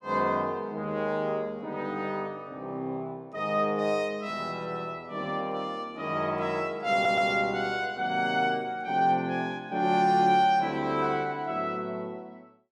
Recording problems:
stutter; at 7 s

